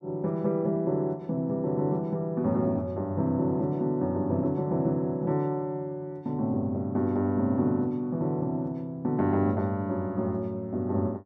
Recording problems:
none

